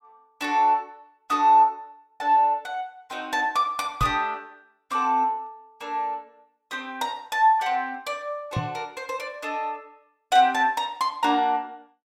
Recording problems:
knock on the microphone; at 4 s and at 8.5 s; peak 0 dB vs average level

